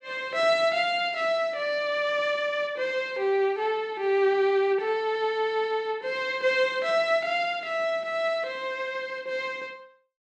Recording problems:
none

